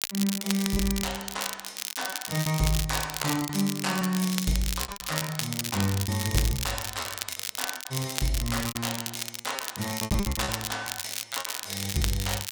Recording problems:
crackling; vinyl, SNR 3 dB
packet loss; 15% of the sound replaced, filled with repeated pitch periods

